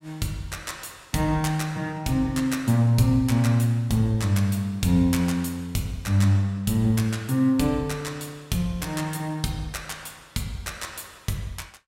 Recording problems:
none

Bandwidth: 16 kHz